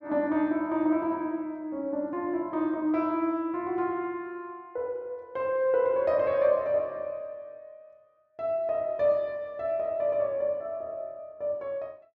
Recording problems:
none

